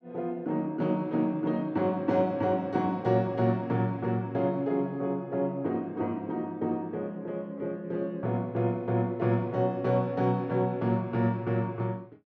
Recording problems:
none

